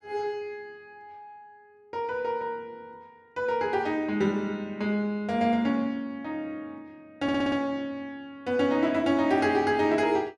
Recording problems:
audio stuttering; at 7 s

